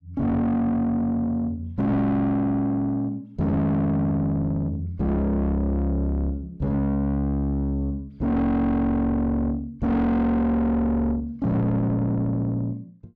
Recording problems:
distortion; soft clipping, signal-to-distortion ratio 8 dB

